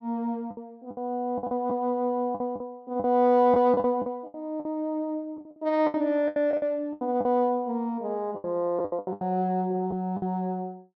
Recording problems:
lost packets; 13% of the sound replaced, filled with the last packet

